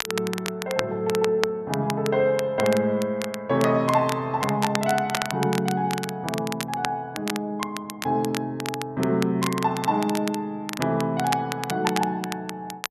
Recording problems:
crackle; vinyl, SNR 9 dB

